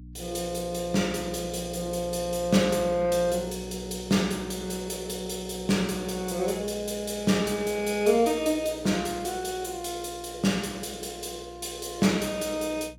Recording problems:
hum; 60 Hz, harmonics up to 300 Hz, SNR 19 dB

